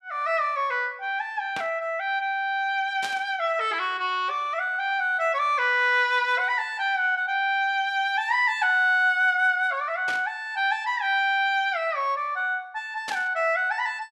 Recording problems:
static burst; 4 times, first at 1.5 s; peak -5 dB vs average level

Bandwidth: 13 kHz